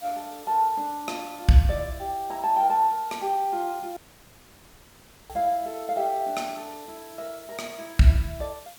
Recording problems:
hiss; slope 0 dB per octave, SNR 21 dB
audio cutting out; at 4 s for 1.5 s

